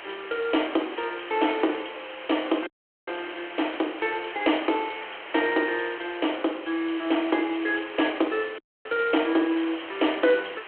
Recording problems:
phone line; 280 Hz to 3.3 kHz, G.726
background hiss; SNR 12 dB
dropout; at 2.5 s and at 8.5 s

